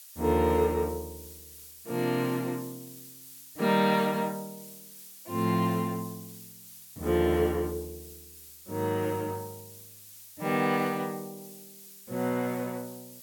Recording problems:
hiss; slope +4 dB per octave, SNR 16 dB

